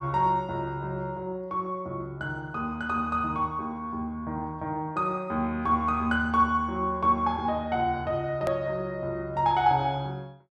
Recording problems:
click at an edit; at 8.5 s

